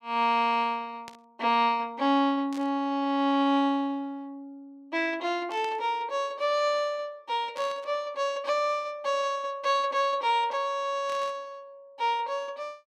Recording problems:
static burst; 5 times, first at 1 s; peak -12 dB vs average level

